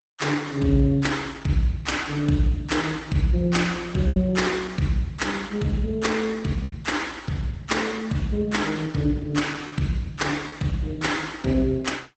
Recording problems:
lossy codec; Opus, log-spectral distance 4 dB, nothing above 8 kHz
packet loss; 2% of the sound replaced, filled with repeated pitch periods

